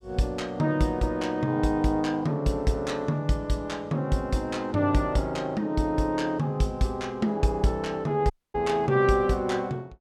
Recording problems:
audio cutting out; at 8.5 s

